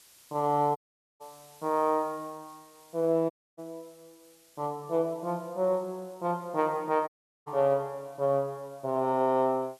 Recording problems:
background hiss; slope +1 dB per octave, SNR 28 dB
dropout; at 1 s, at 3.5 s and at 7 s

